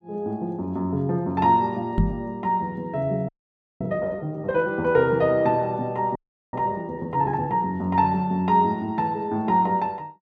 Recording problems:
microphone thump; at 2 s; peak +6 dB vs average level
frozen audio; at 3.5 s for 0.5 s and at 6 s

